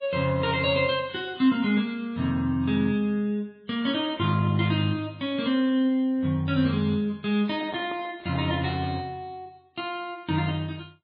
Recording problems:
lossy compression; MP3, log-spectral distance 2 dB, nothing above 4.2 kHz
microphone handling noise; from 7.5 to 9 s; peak -8 dB vs average level

